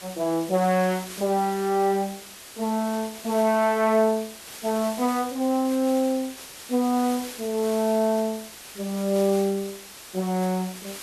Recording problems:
background hiss; slope 0 dB per octave, SNR 14 dB

